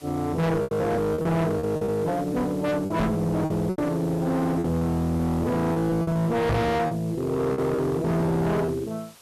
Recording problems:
distortion; hard clipping, uneven, signal-to-distortion ratio 6 dB
background hiss; slope 0 dB per octave, SNR 24 dB
lost packets; 10% of the sound replaced, filled with repeated pitch periods
knock on the microphone; at 3 s and at 6.5 s; peak +6 dB vs average level

